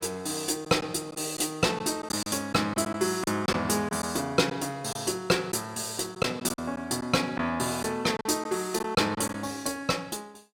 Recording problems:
packet loss; 5% of the sound replaced, filled with silence

